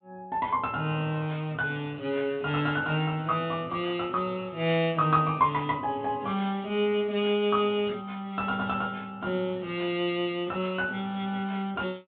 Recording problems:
treble missing; nothing above 4 kHz

